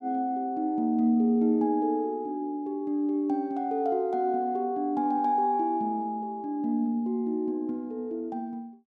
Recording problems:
none

